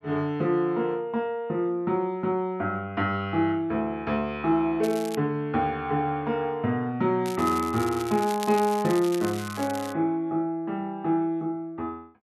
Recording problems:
crackle; at 5 s and from 7 to 10 s; loose cable, SNR 14 dB

